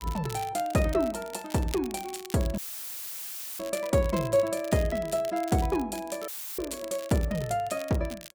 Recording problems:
crackle; vinyl, SNR 16 dB
dropout; at 2.5 s for 1 s and at 6.5 s; filled with static

